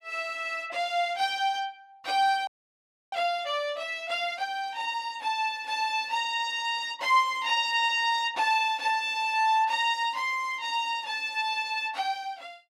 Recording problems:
audio freezing; at 2.5 s for 0.5 s

